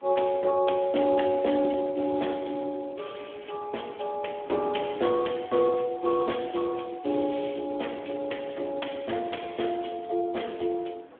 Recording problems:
phone line; 240 Hz to 3.5 kHz, Speex
wind noise; below 800 Hz, SNR 22 dB

